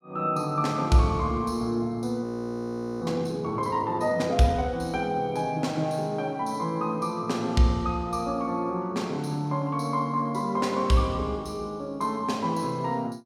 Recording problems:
audio freezing; at 2 s for 1 s

